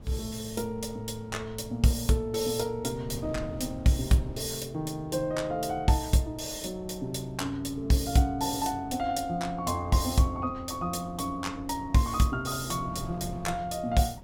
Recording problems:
wind noise; below 210 Hz, SNR 16 dB

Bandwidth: 18 kHz